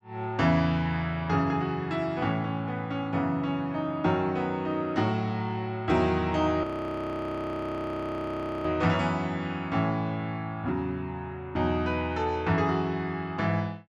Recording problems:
frozen audio; at 6.5 s for 2 s

